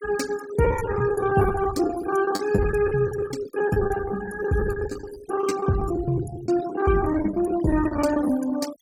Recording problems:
denoising artefacts; signal-to-artefact ratio 15 dB
packet loss; 16% of the sound replaced, filled with the last packet

